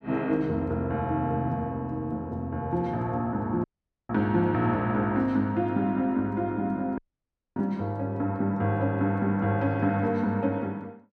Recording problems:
audio cutting out; at 3.5 s and at 7 s for 0.5 s

